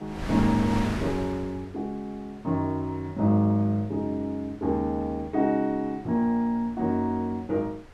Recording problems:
wind on the microphone; below 1.1 kHz, SNR 7 dB

